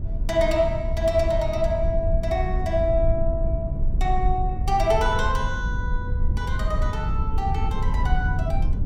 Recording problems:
rumble; below 82 Hz, SNR 1 dB

